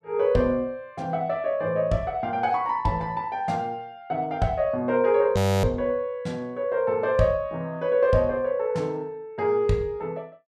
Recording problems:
frozen audio; at 5.5 s

